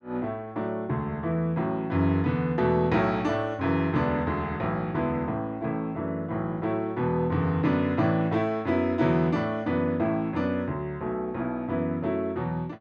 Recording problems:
none

